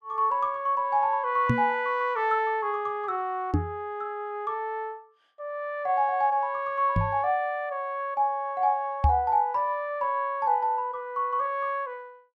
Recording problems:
knock on the microphone; 4 times, first at 1.5 s; peak +7 dB vs average level

